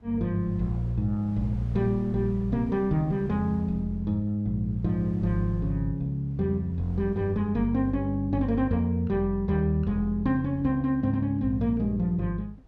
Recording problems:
wind noise; below 190 Hz, SNR 23 dB

